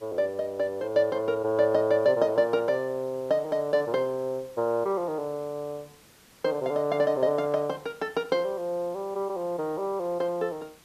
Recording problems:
hiss; slope -2 dB per octave, SNR 27 dB

